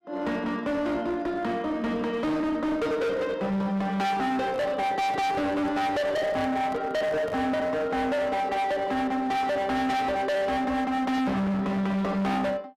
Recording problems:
distortion; hard clipping, uneven, signal-to-distortion ratio 6 dB
microphone handling noise; from 4.5 to 7.5 s; peak -9 dB vs average level

